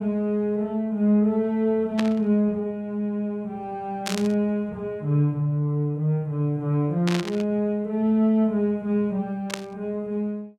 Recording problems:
burst of static; 4 times, first at 2 s; peak 0 dB vs average level

